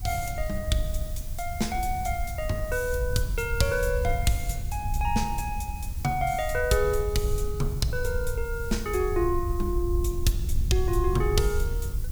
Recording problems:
hiss; slope +1 dB per octave, SNR 17 dB
wind noise; below 72 Hz, SNR 3 dB

